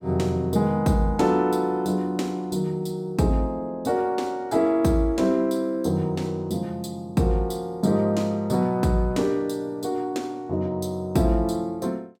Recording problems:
none

